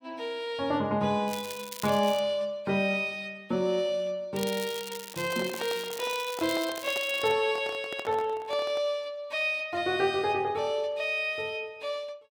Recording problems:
crackle; at 1.5 s and from 4.5 to 7.5 s; loose cable, SNR 12 dB
handling noise; from 5 to 9 s; peak -5 dB vs average level

